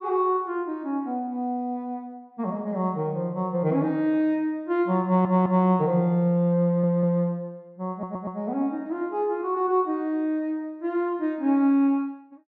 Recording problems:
audio stuttering; at 5 s, at 6.5 s and at 8 s

